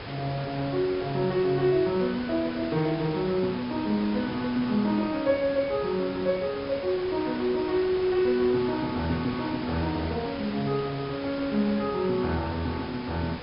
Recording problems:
low-pass filter; nothing above 5.5 kHz
background hiss; slope -4 dB per octave, SNR 11 dB

